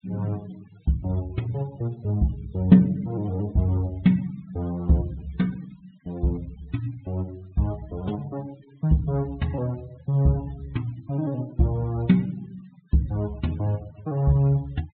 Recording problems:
low-pass filter; nothing above 4 kHz
noise reduction artefacts; signal-to-artefact ratio 25 dB

